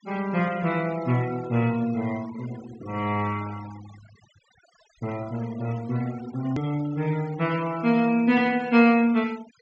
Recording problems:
treble missing; nothing above 8 kHz
noise reduction artefacts; signal-to-artefact ratio 20 dB
hard cut with a click; at 6.5 s

